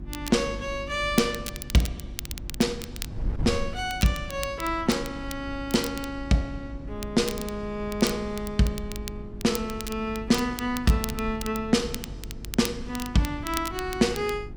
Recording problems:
electrical hum; 50 Hz, harmonics up to 350 Hz, SNR 16 dB
wind on the microphone; below 110 Hz, SNR 14 dB
crackle; vinyl, SNR 12 dB

